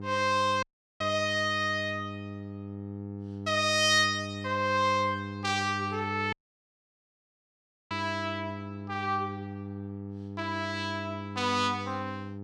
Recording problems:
electrical hum; 50 Hz, harmonics up to 900 Hz, SNR 10 dB
dropout; at 0.5 s and at 6.5 s for 1.5 s

